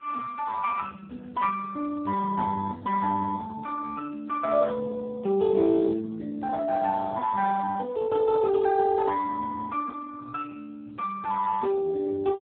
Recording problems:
phone line; 190 Hz to 2 kHz, Speex

